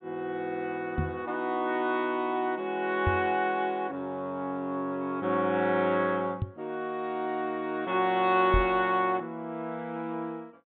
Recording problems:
low-pass filter; nothing above 4 kHz
microphone thump; 4 times, first at 1 s; peak +4 dB vs average level

